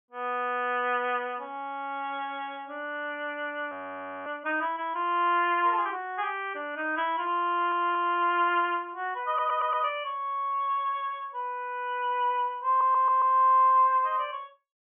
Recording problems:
treble missing; nothing above 3.4 kHz
frozen audio; at 3.5 s for 0.5 s
stutter; at 7.5 s, at 9.5 s and at 13 s

